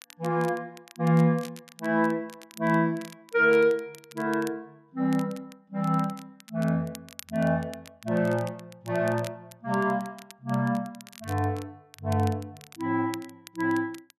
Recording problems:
crackle; vinyl, SNR 21 dB

